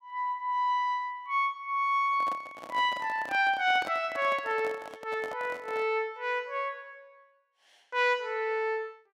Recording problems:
microphone handling noise; from 2 to 6 s; peak -6 dB vs average level

